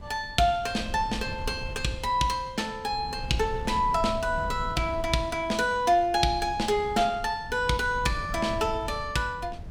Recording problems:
wind on the microphone; below 130 Hz, SNR 13 dB

